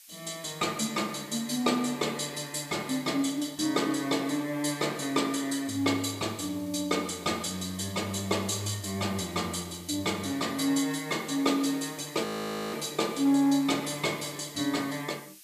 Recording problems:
hiss; slope +7 dB per octave, SNR 20 dB
audio freezing; at 12 s

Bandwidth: 14.5 kHz